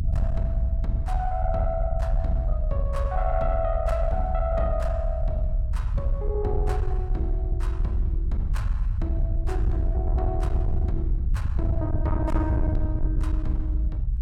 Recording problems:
distorted audio; soft clipping, signal-to-distortion ratio 11 dB
low-frequency rumble; below 76 Hz, SNR -4 dB

